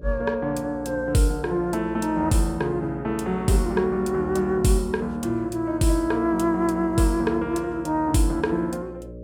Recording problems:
hum; 60 Hz, harmonics up to 600 Hz, SNR 16 dB

